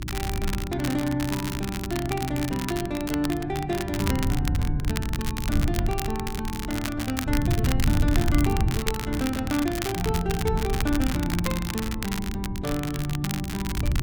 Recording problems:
electrical hum; 60 Hz, harmonics up to 360 Hz, SNR 11 dB
wind noise; below 130 Hz, SNR 2 dB
crackle; vinyl, SNR 6 dB

